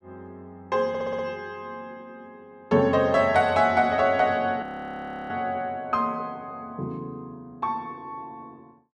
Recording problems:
stutter; at 1 s
audio freezing; at 4.5 s for 0.5 s

